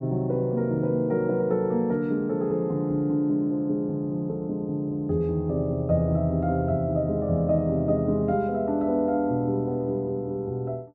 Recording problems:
none

